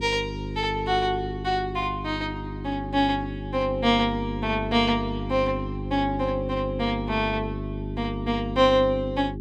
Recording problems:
hum; 50 Hz, harmonics up to 400 Hz, SNR 7 dB

